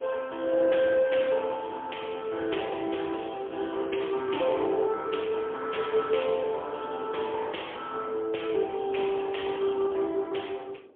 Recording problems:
telephone audio; 280 Hz to 3.4 kHz, AMR-NB, then MP3
wind noise; below 500 Hz, SNR 20 dB

